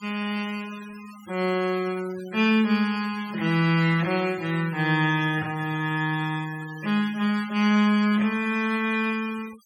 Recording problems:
denoising artefacts; signal-to-artefact ratio 19 dB

